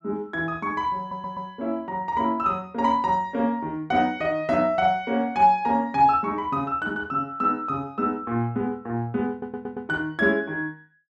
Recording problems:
audio stuttering; at 1 s and at 9.5 s

